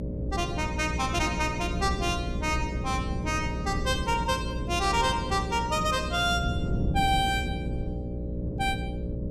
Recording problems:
hum; 60 Hz, harmonics up to 600 Hz, SNR 6 dB
wind on the microphone; below 200 Hz, SNR 7 dB

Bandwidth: 15.5 kHz